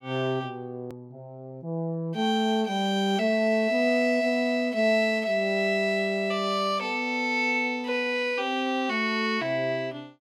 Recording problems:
edit click; at 1 s

